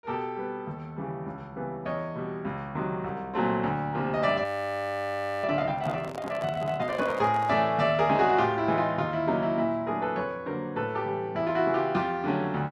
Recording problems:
audio freezing; at 4.5 s for 1 s
microphone handling noise; from 6 to 7.5 s; peak -9 dB vs average level

